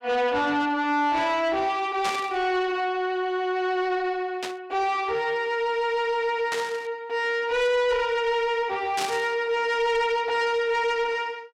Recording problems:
distortion; soft clipping, signal-to-distortion ratio 11 dB
burst of static; 4 times, first at 2 s; peak -2 dB vs average level

